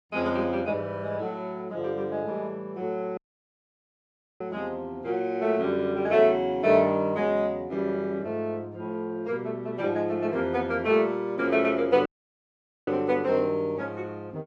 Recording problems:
audio cutting out; at 3 s for 1 s and at 12 s for 1 s

